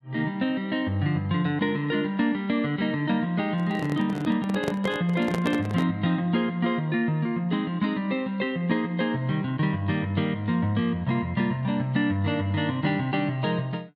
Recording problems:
microphone handling noise; from 3.5 to 6 s; peak +1 dB vs average level

